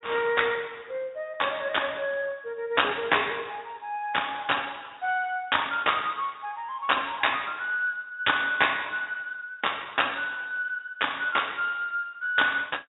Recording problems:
treble cut off; nothing above 3.7 kHz
lossy codec; Speex, log-spectral distance 6 dB

